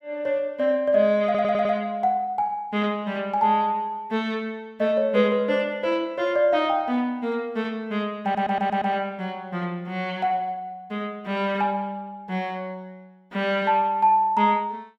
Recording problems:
stutter; at 1.5 s and at 8 s

